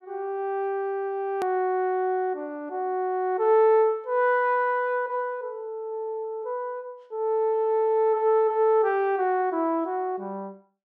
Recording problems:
edit click; at 1.5 s

